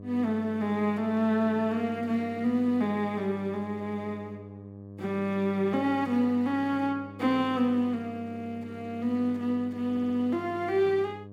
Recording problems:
electrical hum; 50 Hz, harmonics up to 700 Hz, SNR 16 dB
audio stuttering; at 10 s

